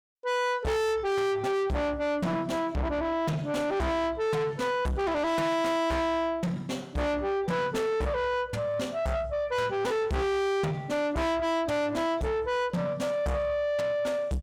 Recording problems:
distorted audio; soft clipping, signal-to-distortion ratio 6 dB

